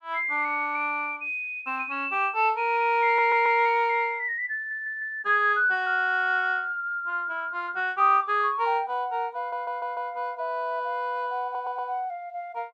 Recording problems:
stutter; 4 times, first at 3 s

